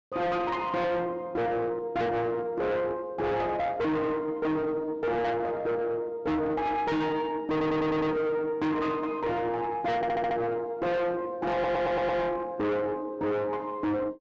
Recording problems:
low-pass filter; nothing above 8 kHz
distorted audio; soft clipping, signal-to-distortion ratio 5 dB
stutter; at 7.5 s, at 10 s and at 12 s

